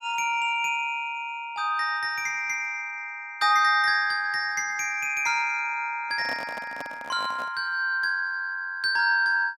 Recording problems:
handling noise; from 6 to 7.5 s; peak -7 dB vs average level

